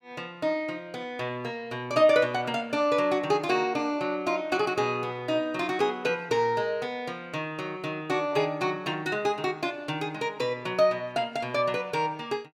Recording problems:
none

